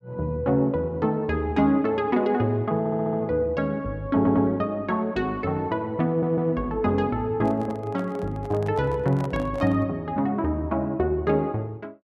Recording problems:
stutter; at 3 s, at 4 s and at 6 s
microphone handling noise; from 7.5 to 10 s; peak -9 dB vs average level

